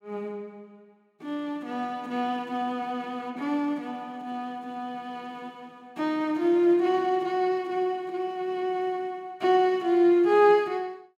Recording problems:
none

